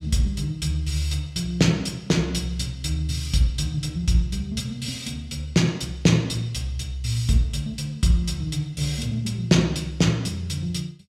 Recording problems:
none

